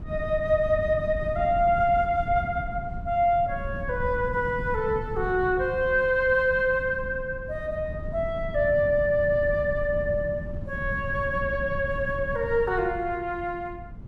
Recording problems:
wind on the microphone; below 150 Hz, SNR 11 dB

